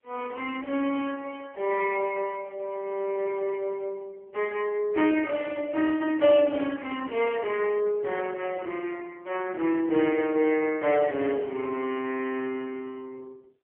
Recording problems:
phone line; 280 Hz to 3.1 kHz, AMR-NB

